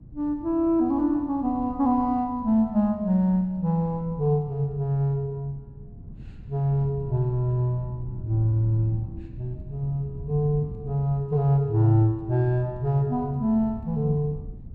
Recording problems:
wind on the microphone; below 160 Hz, SNR 17 dB

